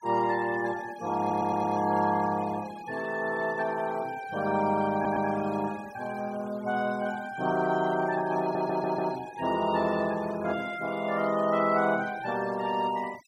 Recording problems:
denoising artefacts; signal-to-artefact ratio 18 dB
stutter; at 1 s, at 5 s and at 8.5 s

